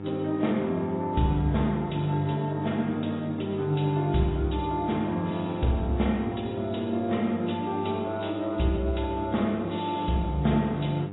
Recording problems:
lossy codec; AAC, log-spectral distance 3 dB, nothing above 3.8 kHz
hum; 50 Hz, harmonics up to 1.8 kHz, SNR 11 dB

